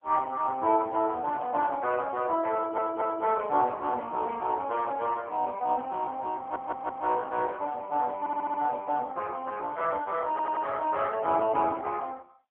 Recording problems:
telephone audio; 260 Hz to 3.2 kHz, AMR-NB
audio stuttering; 4 times, first at 2.5 s

